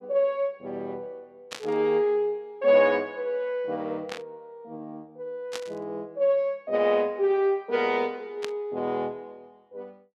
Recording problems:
burst of static; 4 times, first at 1.5 s; peak -4 dB vs average level

